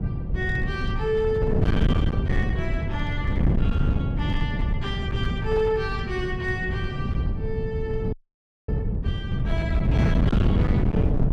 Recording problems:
distorted audio; hard clipping, signal-to-distortion ratio 7 dB
wind on the microphone; below 180 Hz, SNR -5 dB
frozen audio; at 8 s for 0.5 s

